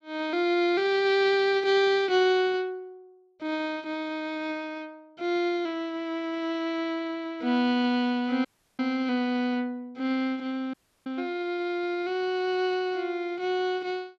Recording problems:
audio cutting out; at 8.5 s and at 11 s

